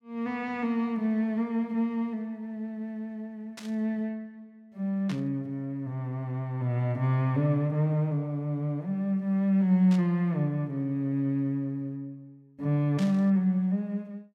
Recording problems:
burst of static; 4 times, first at 3.5 s; peak -9 dB vs average level

